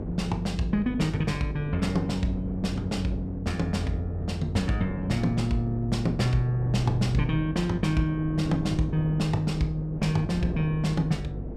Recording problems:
hum; 50 Hz, harmonics up to 500 Hz, SNR 12 dB
wind on the microphone; below 320 Hz, SNR 11 dB

